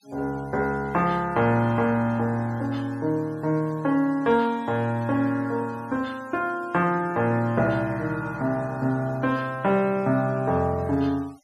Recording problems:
denoising artefacts; signal-to-artefact ratio 27 dB

